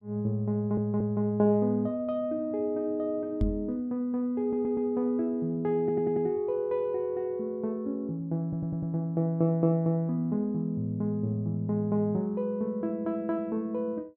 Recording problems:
audio stuttering; 4 times, first at 0.5 s
microphone thump; at 3.5 s; peak +4 dB vs average level

